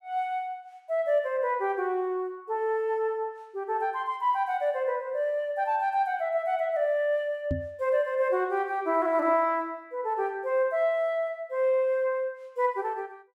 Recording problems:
microphone thump; at 7.5 s; peak +1 dB vs average level

